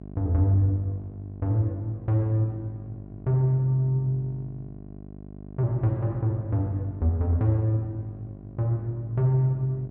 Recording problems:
hum; 50 Hz, harmonics up to 800 Hz, SNR 16 dB

